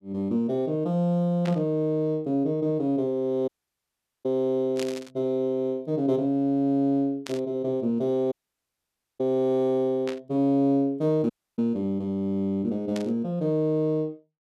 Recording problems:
burst of static; 5 times, first at 1.5 s; peak -6 dB vs average level
audio cutting out; at 3.5 s for 1 s, at 8.5 s for 1 s and at 11 s

